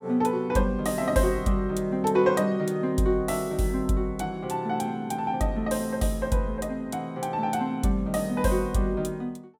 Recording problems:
none

